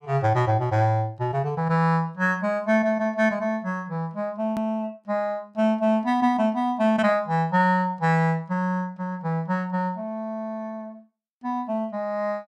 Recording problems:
hard cut with a click; at 4.5 s

